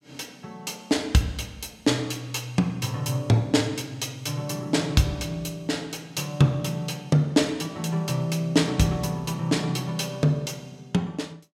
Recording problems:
none

